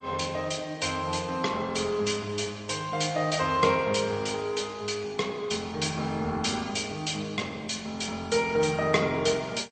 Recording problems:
codec artefacts; MP3, then MP2, log-spectral distance 4 dB, nothing above 8.5 kHz

